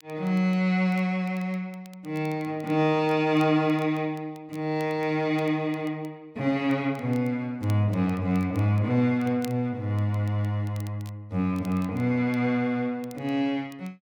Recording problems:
crackle; vinyl, SNR 28 dB

